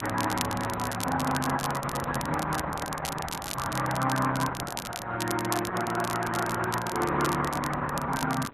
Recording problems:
lossy compression; Opus, log-spectral distance 3 dB
wind on the microphone; below 590 Hz, SNR 17 dB
crackle; vinyl, SNR 9 dB

